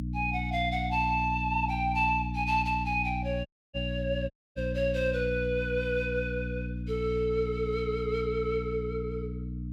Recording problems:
electrical hum; 60 Hz, harmonics up to 300 Hz, SNR 5 dB
audio cutting out; at 3.5 s and at 4.5 s

